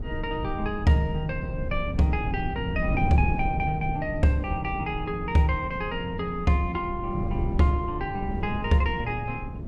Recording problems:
low-frequency rumble; below 86 Hz, SNR 14 dB
wind noise; below 190 Hz, SNR 7 dB

